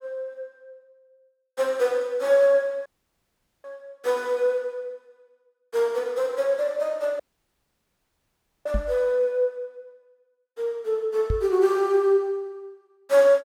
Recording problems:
dropout; at 3 s for 1 s and at 7 s for 1.5 s
microphone bump; at 8.5 s and at 11 s; peak +1 dB vs average level

